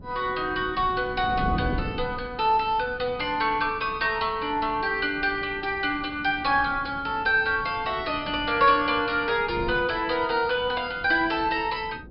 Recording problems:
low-pass filter; nothing above 5.2 kHz
wind noise; below 280 Hz, SNR 14 dB

